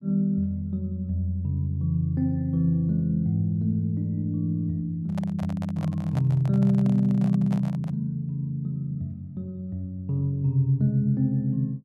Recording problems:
microphone handling noise; from 5 to 8 s; peak -9 dB vs average level

